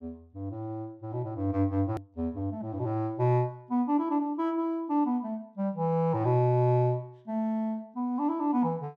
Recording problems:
edit click; at 2 s

